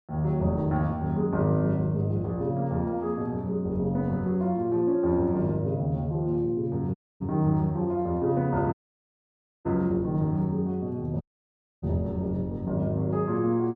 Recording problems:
dropout; at 7 s, at 8.5 s for 1 s and at 11 s for 0.5 s

